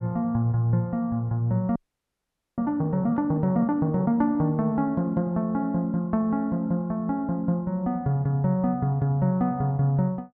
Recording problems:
audio freezing; at 2 s for 1 s

